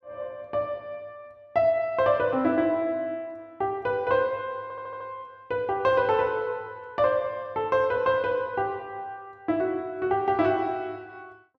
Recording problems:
audio stuttering; at 4.5 s

